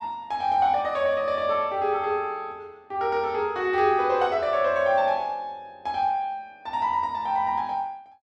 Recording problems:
none

